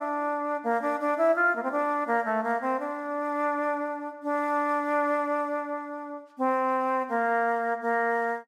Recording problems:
none

